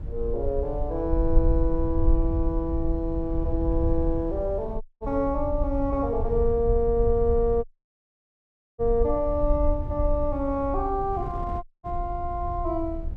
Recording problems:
low-frequency rumble; below 64 Hz, SNR 4 dB
wind noise; below 190 Hz, SNR 16 dB
audio cutting out; at 5 s, at 7.5 s for 1 s and at 12 s

